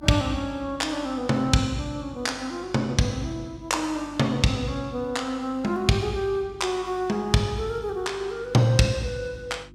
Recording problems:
hum; 50 Hz, harmonics up to 350 Hz, SNR 23 dB

